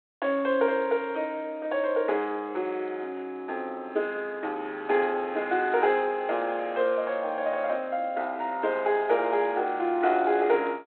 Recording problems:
phone line; 300 Hz to 3.8 kHz, G.726

